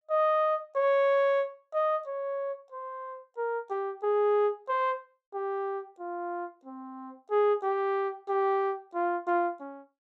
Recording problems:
none

